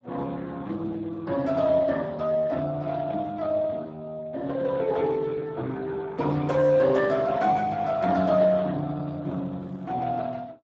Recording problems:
lossy codec; Speex, log-spectral distance 3 dB, nothing above 7.3 kHz

